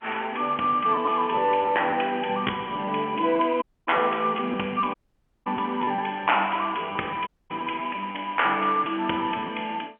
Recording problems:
phone line; 220 Hz to 3.2 kHz, G.711
lost packets; 5% of the sound replaced, filled with repeated pitch periods
audio cutting out; at 3.5 s, at 5 s for 0.5 s and at 7.5 s

